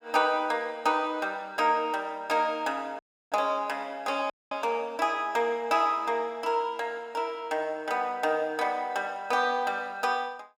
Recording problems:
audio cutting out; at 3 s and at 4.5 s

